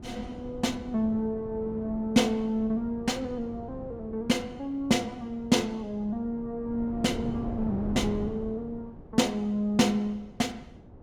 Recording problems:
wind noise; below 340 Hz, SNR 13 dB

